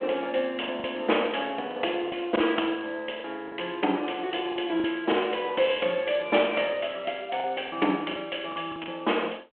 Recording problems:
telephone audio; 300 Hz to 3.3 kHz, G.726
lost packets; 7% of the sound replaced, filled with the last packet

